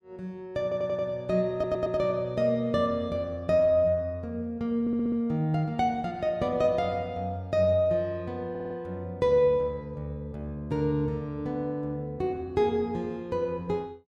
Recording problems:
audio stuttering; 4 times, first at 0.5 s

